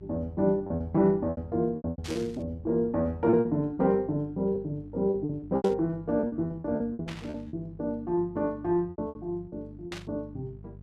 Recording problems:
hum; 50 Hz, harmonics up to 450 Hz, SNR 19 dB
lost packets; 14% of the sound replaced, filled with repeated pitch periods
static burst; 4 times, first at 2 s; peak -6 dB vs average level

